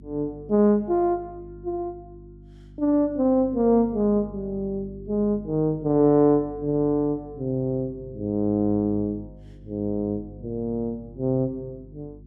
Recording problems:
mains hum; 50 Hz, harmonics up to 350 Hz, SNR 20 dB

